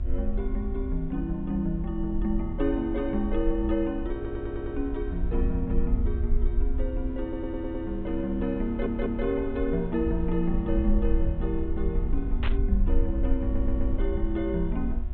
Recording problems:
treble missing; nothing above 4 kHz
hum; 60 Hz, harmonics up to 1.7 kHz, SNR 15 dB
low-frequency rumble; below 56 Hz, SNR 2 dB
audio stuttering; 4 times, first at 4 s
static burst; at 12 s; peak -1 dB vs average level

